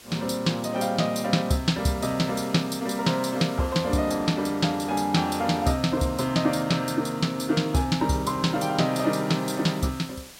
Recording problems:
background hiss; slope 0 dB per octave, SNR 20 dB

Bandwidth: 16 kHz